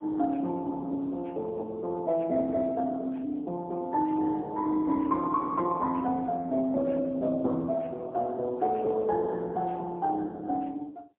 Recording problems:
telephone audio; 220 Hz to 2.1 kHz, AMR-NB, then MP3

